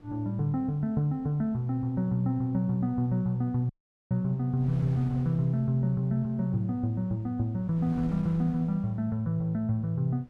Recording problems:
wind noise; below 290 Hz, SNR 20 dB
audio cutting out; at 3.5 s

